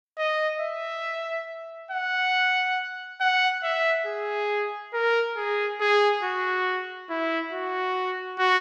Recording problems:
none

